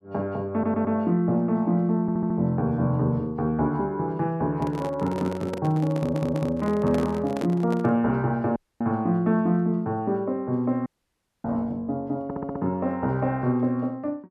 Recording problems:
audio stuttering; 4 times, first at 0.5 s
handling noise; from 4.5 to 8 s; peak -2 dB vs average level
dropout; at 8.5 s and at 11 s for 0.5 s

